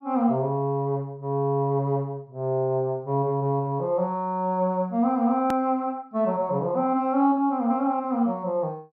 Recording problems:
hard cut with a click; at 5.5 s

